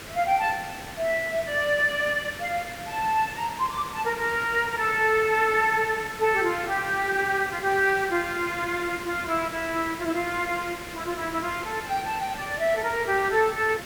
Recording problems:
background hiss; SNR 13 dB

